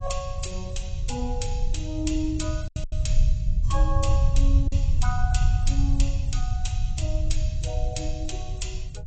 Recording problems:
lossy codec; AAC, log-spectral distance 3 dB, nothing above 7.8 kHz
low-frequency rumble; below 80 Hz, SNR -7 dB
lost packets; 2% of the sound replaced, filled with silence

